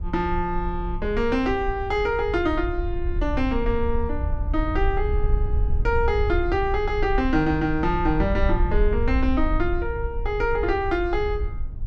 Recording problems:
wind on the microphone; below 66 Hz, SNR 4 dB

